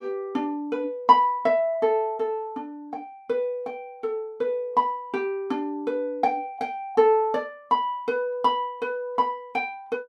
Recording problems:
none

